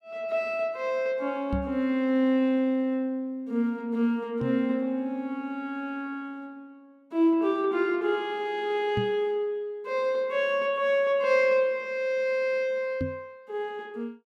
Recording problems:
microphone thump; 4 times, first at 1.5 s; peak 0 dB vs average level

